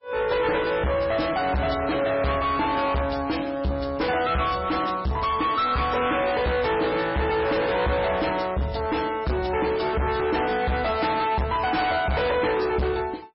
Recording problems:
lossy compression; MP3, log-spectral distance 4 dB, nothing above 5.3 kHz
distortion; hard clipping, uneven, signal-to-distortion ratio 5 dB

